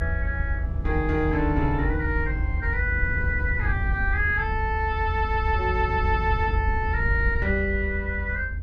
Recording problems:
rumble; below 82 Hz, SNR 2 dB

